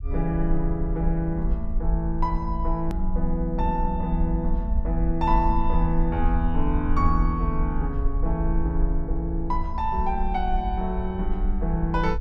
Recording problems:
rumble; below 52 Hz, SNR 2 dB
edit click; at 3 s

